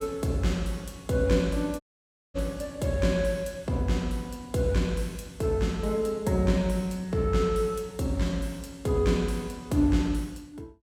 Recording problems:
audio cutting out; at 2 s for 0.5 s

